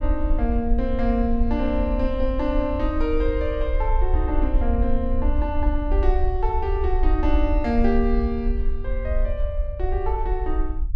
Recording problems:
rumble; below 56 Hz, SNR 0 dB

